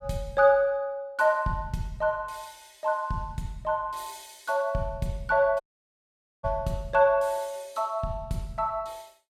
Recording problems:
audio cutting out; at 5.5 s for 1 s

